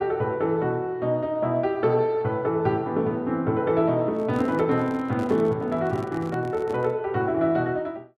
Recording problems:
microphone handling noise; from 4 to 7 s; peak -8 dB vs average level

